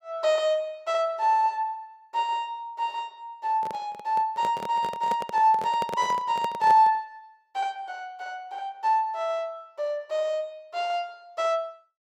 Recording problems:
handling noise; from 3.5 to 7 s; peak -4 dB vs average level

